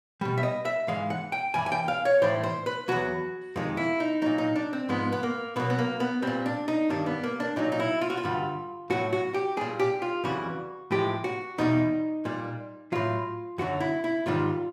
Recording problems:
none

